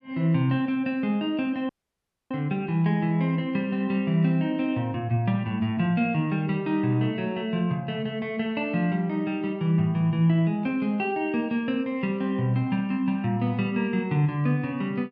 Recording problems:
audio cutting out; at 1.5 s for 0.5 s

